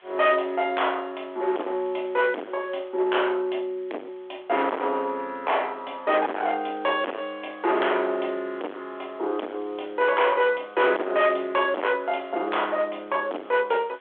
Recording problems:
phone line; 280 Hz to 3.4 kHz, G.726
distorted audio; hard clipping, signal-to-distortion ratio 4 dB
hiss; SNR 30 dB

